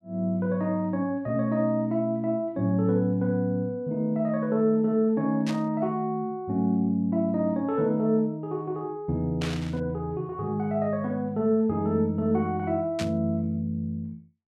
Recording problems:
burst of static; at 5.5 s, at 9.5 s and at 13 s; peak -5 dB vs average level

